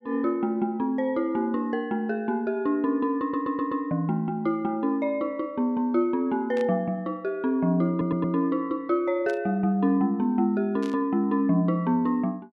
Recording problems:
stutter; at 3 s and at 8 s
static burst; at 6.5 s, at 9.5 s and at 11 s; peak -13 dB vs average level

